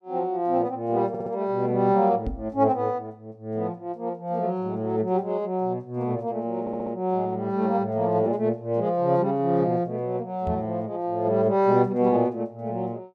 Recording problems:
audio stuttering; at 1 s and at 6.5 s
knock on the microphone; at 2.5 s and at 10 s; peak -2 dB vs average level

